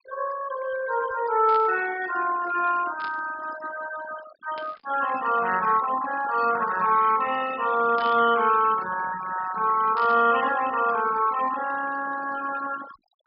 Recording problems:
low-pass filter; nothing above 5.5 kHz
noise reduction artefacts; signal-to-artefact ratio 13 dB
burst of static; 5 times, first at 1.5 s; peak -12 dB vs average level

